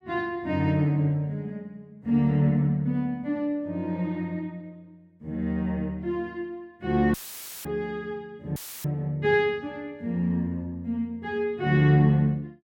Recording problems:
dropout; at 7 s for 0.5 s and at 8.5 s; filled with static

